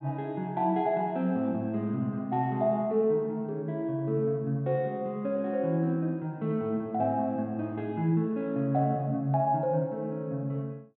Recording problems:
low-pass filter; nothing above 4.1 kHz

